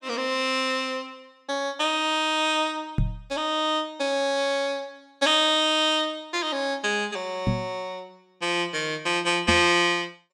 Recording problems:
microphone thump; at 3 s, at 7.5 s and at 9.5 s; peak +3 dB vs average level

